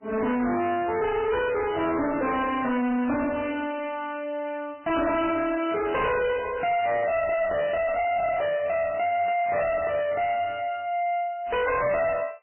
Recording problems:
lossy compression; MP3, log-spectral distance 4 dB, nothing above 3 kHz
distorted audio; soft clipping, signal-to-distortion ratio 6 dB

